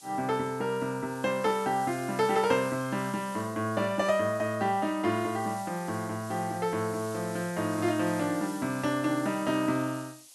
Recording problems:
background hiss; SNR 17 dB

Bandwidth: 12 kHz